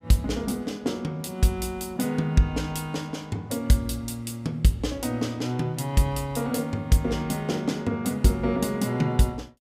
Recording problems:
none

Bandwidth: 15.5 kHz